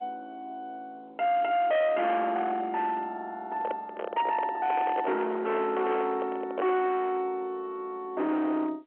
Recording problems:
telephone audio; 650 Hz to 3.6 kHz, G.711
distorted audio; hard clipping, signal-to-distortion ratio 11 dB
microphone handling noise; from 3.5 to 7 s; peak 0 dB vs average level

